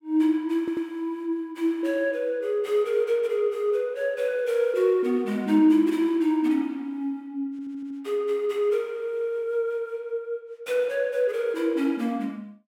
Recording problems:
stutter; at 0.5 s and at 7.5 s

